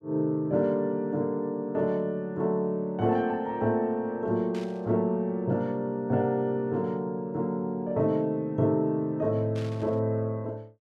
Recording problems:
static burst; at 4.5 s and at 9.5 s; peak -13 dB vs average level

